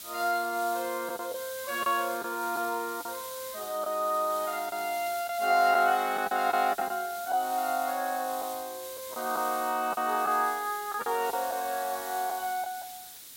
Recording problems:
background hiss; SNR 11 dB
packet loss; 5% of the sound replaced, filled with the last packet

